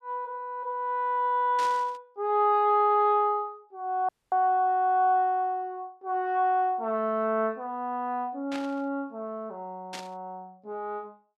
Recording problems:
static burst; at 1.5 s, at 8.5 s and at 10 s; peak -7 dB vs average level
audio cutting out; at 4 s

